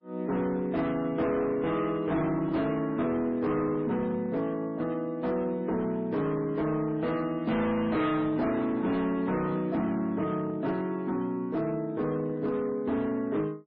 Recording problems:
lossy compression; MP3, log-spectral distance 2 dB, nothing above 5 kHz
distortion; hard clipping, signal-to-distortion ratio 11 dB

